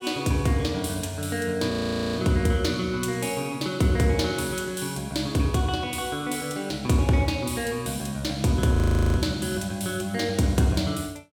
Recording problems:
audio freezing; at 1.5 s and at 9 s

